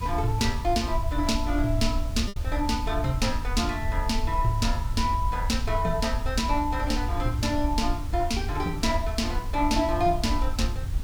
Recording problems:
hiss; slope -4 dB per octave, SNR 16 dB
rumble; below 74 Hz, SNR 4 dB
lost packets; 0.7% of the sound replaced, filled with repeated pitch periods

